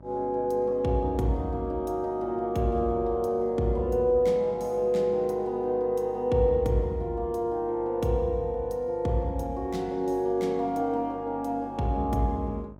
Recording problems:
hum; 50 Hz, harmonics up to 1.3 kHz, SNR 22 dB

